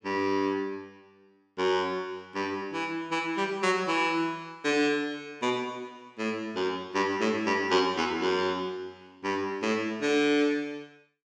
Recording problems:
none

